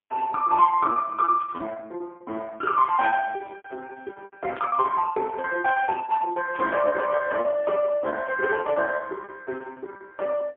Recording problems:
phone line; 240 Hz to 2.6 kHz, AMR-NB, then MP3
lost packets; 14% of the sound replaced, filled with repeated pitch periods
static burst; 4 times, first at 1.5 s; peak -11 dB vs average level

